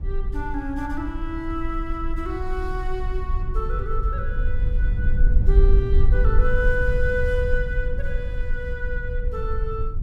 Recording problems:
low-frequency rumble; below 54 Hz, SNR -4 dB

